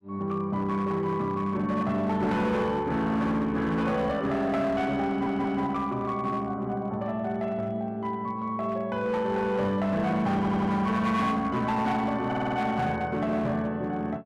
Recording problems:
distorted audio; hard clipping, signal-to-distortion ratio 11 dB
audio stuttering; at 5 s, at 10 s and at 12 s

